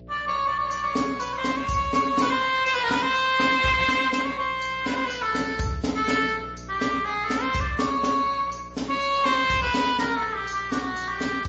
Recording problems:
codec artefacts; Speex, then MP3, log-spectral distance 5 dB, nothing above 7.3 kHz
hum; 60 Hz, harmonics up to 660 Hz, SNR 21 dB

